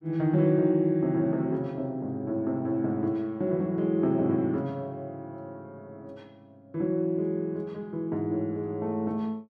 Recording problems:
none

